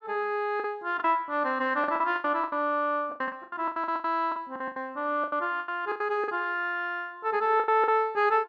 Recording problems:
lost packets; 15% of the sound replaced, filled with the last packet

